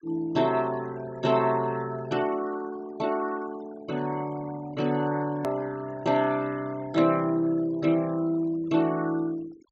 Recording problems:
treble missing; nothing above 7.6 kHz
noise reduction artefacts; signal-to-artefact ratio 21 dB
click at an edit; at 5.5 s

